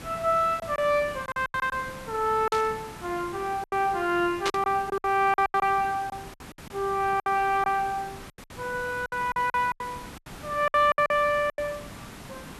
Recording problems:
background hiss; slope -4 dB per octave, SNR 16 dB
lost packets; 11% of the sound replaced, filled with silence
burst of static; at 2.5 s and at 4.5 s; peak +1 dB vs average level

